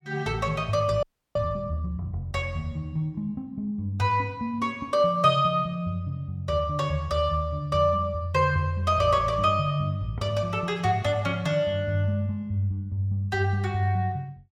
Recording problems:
audio freezing; at 1 s

